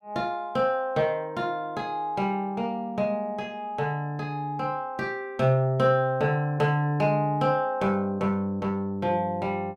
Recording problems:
none

